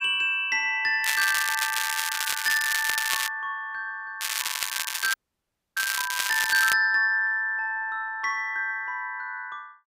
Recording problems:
crackle; from 1 to 3.5 s and from 4 to 6.5 s; loose cable, SNR 3 dB
dropout; at 5 s for 0.5 s

